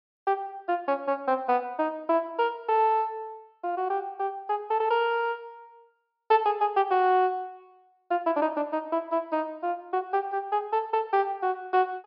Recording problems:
treble missing; nothing above 5.5 kHz

